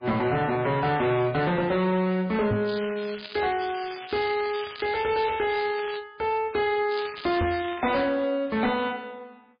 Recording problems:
codec artefacts; MP3, log-spectral distance 7 dB, nothing above 4.6 kHz
distorted audio; hard clipping, uneven, signal-to-distortion ratio 10 dB
microphone thump; at 2.5 s and at 7.5 s; peak +2 dB vs average level
crackle; from 2.5 to 6 s and from 7 to 8 s; loose cable, SNR 12 dB

